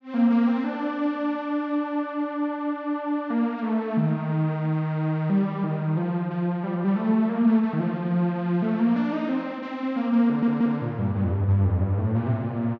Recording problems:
audio stuttering; at 10 s

